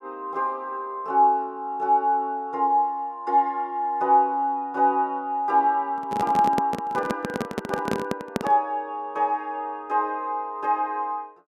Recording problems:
handling noise; from 6 to 8.5 s; peak +2 dB vs average level

